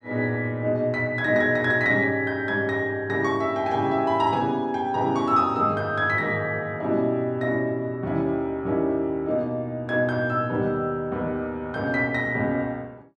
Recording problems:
none

